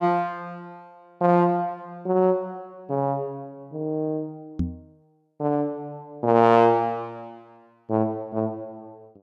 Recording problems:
knock on the microphone; at 4.5 s; peak +2 dB vs average level

